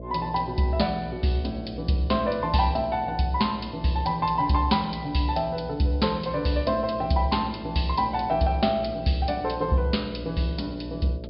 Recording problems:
treble missing; nothing above 5.1 kHz
hum; 60 Hz, harmonics up to 660 Hz, SNR 14 dB

